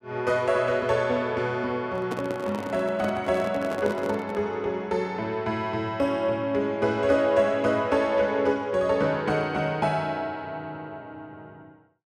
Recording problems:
handling noise; from 2 to 4.5 s; peak -3 dB vs average level

